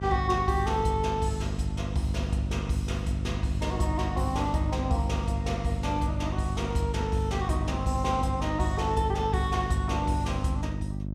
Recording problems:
electrical hum; 50 Hz, harmonics up to 600 Hz, SNR 5 dB

